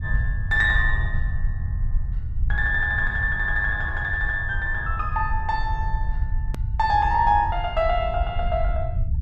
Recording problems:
rumble; below 76 Hz, SNR 5 dB
click at an edit; at 6.5 s

